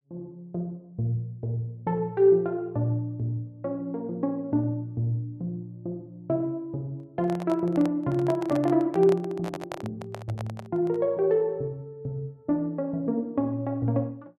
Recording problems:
handling noise; from 7 to 11 s; peak -4 dB vs average level

